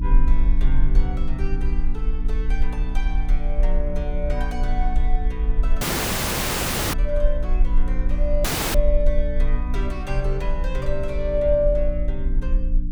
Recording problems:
hum; 60 Hz, harmonics up to 300 Hz, SNR 4 dB
low-frequency rumble; below 40 Hz, strongest tone 20 Hz, SNR -3 dB
dropout; at 6 s for 1 s and at 8.5 s

